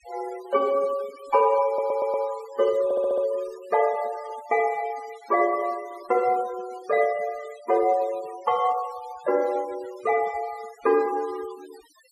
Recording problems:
noise reduction artefacts; signal-to-artefact ratio 21 dB
audio stuttering; at 1.5 s and at 3 s

